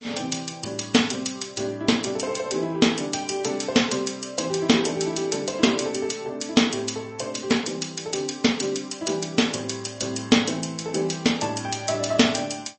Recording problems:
lossy codec; MP3, log-spectral distance 5 dB, nothing above 8 kHz

